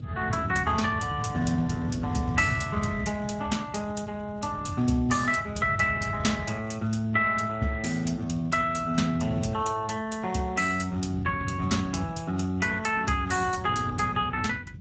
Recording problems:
lossy compression; Speex, log-spectral distance 4 dB, nothing above 7.8 kHz
wind on the microphone; below 170 Hz, SNR 9 dB

